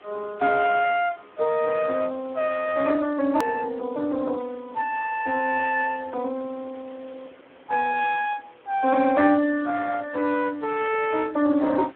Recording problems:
telephone audio; 240 Hz to 3.5 kHz, Speex
hiss; SNR 26 dB
edit click; at 3.5 s

